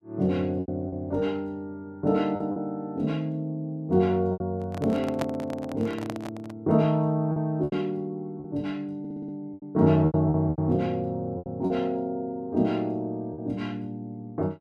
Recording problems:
packet loss; 6% of the sound replaced, filled with repeated pitch periods
microphone handling noise; from 4.5 to 6.5 s; peak +1 dB vs average level
audio stuttering; at 9 s

